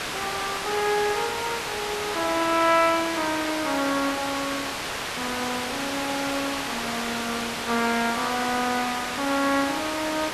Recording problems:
background hiss; SNR 2 dB

